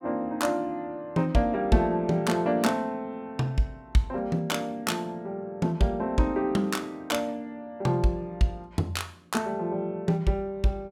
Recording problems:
none

